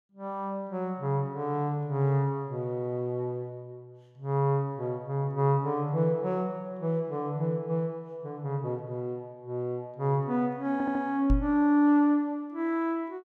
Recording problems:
stutter; at 11 s
microphone bump; at 11 s; peak +6 dB vs average level

